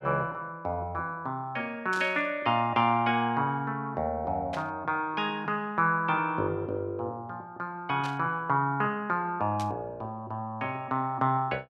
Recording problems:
burst of static; 4 times, first at 2 s; peak -7 dB vs average level

